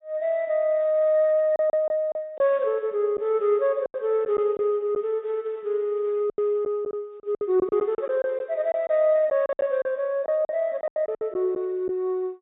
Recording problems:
treble missing; nothing above 4 kHz
lost packets; 9% of the sound replaced, filled with silence

